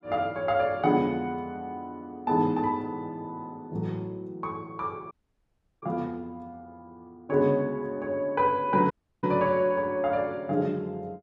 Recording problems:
audio cutting out; at 5 s for 0.5 s and at 9 s

